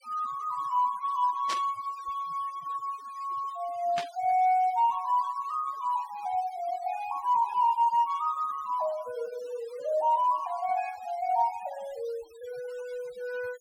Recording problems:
noise reduction artefacts; signal-to-artefact ratio 22 dB
static burst; at 1.5 s and at 4 s; peak -2 dB vs average level

